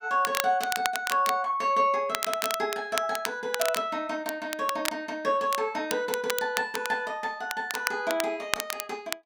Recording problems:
crackle; vinyl, SNR 5 dB

